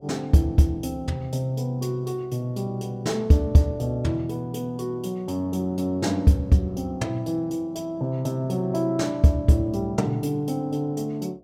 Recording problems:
mains hum; 60 Hz, harmonics up to 720 Hz, SNR 32 dB

